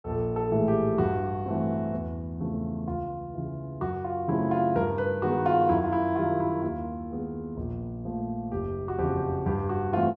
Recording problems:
none

